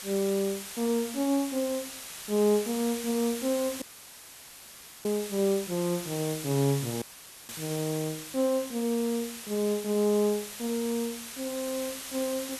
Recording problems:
hiss; slope +1 dB per octave, SNR 9 dB
dropout; at 4 s for 1 s and at 7 s; filled with static

